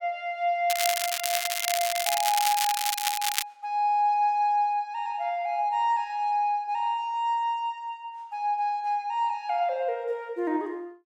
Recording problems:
crackle; from 0.5 to 3.5 s; loose cable, SNR 1 dB

